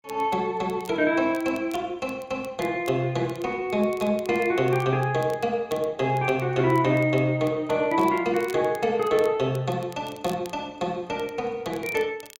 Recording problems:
crackling; vinyl, SNR 24 dB

